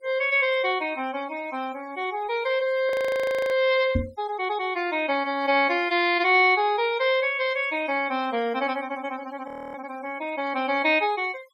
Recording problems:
denoising artefacts; signal-to-artefact ratio 21 dB
frozen audio; at 3 s for 0.5 s and at 9.5 s
microphone bump; at 4 s; peak +3 dB vs average level

